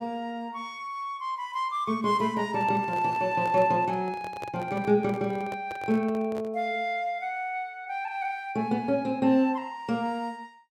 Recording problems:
handling noise; from 2.5 to 6.5 s; peak -6 dB vs average level

